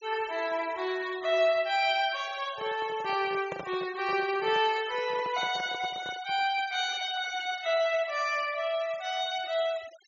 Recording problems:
low-pass filter; nothing above 7.2 kHz
denoising artefacts; signal-to-artefact ratio 19 dB
handling noise; from 2.5 to 6.5 s; peak -5 dB vs average level

